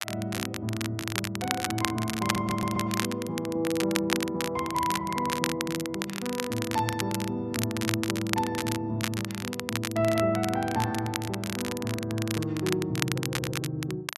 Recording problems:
crackling; vinyl, SNR 4 dB
stutter; at 2 s and at 13 s

